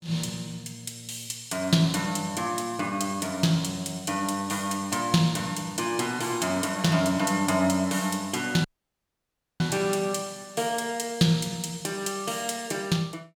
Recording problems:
dropout; at 8.5 s for 1 s

